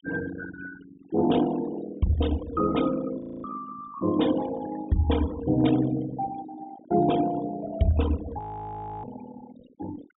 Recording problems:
treble cut off; nothing above 4 kHz
noise reduction artefacts; signal-to-artefact ratio 15 dB
frozen audio; at 3 s and at 8.5 s for 0.5 s

